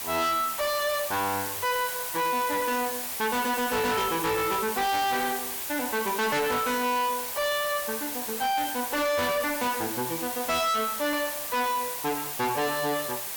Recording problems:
distortion; soft clipping, signal-to-distortion ratio 6 dB
hiss; SNR 5 dB

